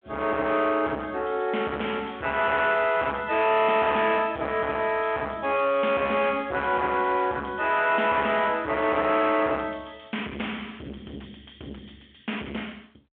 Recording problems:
phone line; 240 Hz to 3.4 kHz, G.726
distortion; soft clipping, signal-to-distortion ratio 8 dB

